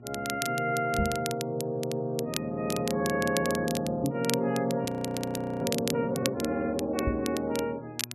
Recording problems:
lossy codec; MP3, log-spectral distance 2 dB, nothing above 13.1 kHz
electrical hum; 60 Hz, harmonics up to 720 Hz, SNR 19 dB
crackle; vinyl, SNR 9 dB
knock on the microphone; at 1 s, at 4 s and at 7 s; peak +4 dB vs average level
frozen audio; at 5 s for 1 s

